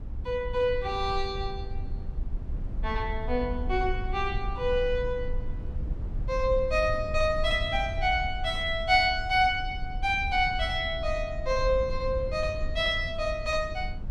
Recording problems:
low-frequency rumble; below 70 Hz, SNR 8 dB

